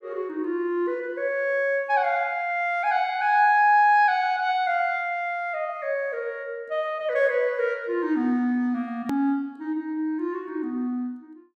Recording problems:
click at an edit; at 9 s

